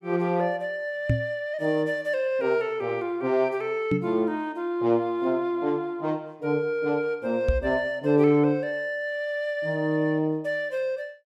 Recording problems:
microphone bump; at 1 s, at 4 s and at 7.5 s; peak +5 dB vs average level

